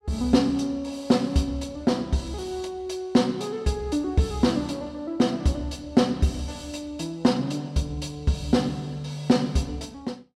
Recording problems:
none

